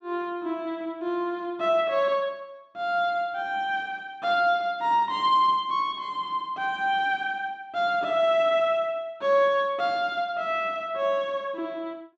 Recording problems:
none

